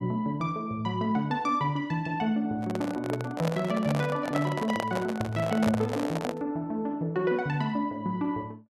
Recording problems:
handling noise; from 2.5 to 6.5 s; peak +2 dB vs average level

